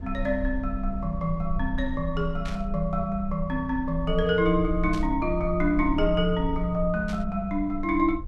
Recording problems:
low-frequency rumble; below 56 Hz, SNR 9 dB
burst of static; at 2.5 s, at 5 s and at 7 s; peak -9 dB vs average level

